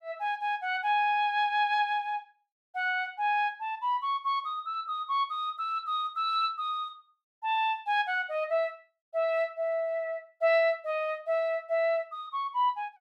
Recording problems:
none

